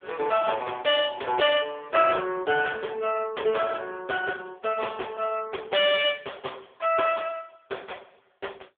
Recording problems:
telephone audio; 320 Hz to 3.4 kHz, AMR-NB

